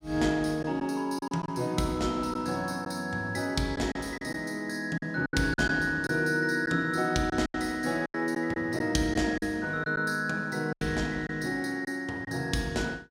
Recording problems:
packet loss; 6% of the sound replaced, filled with silence

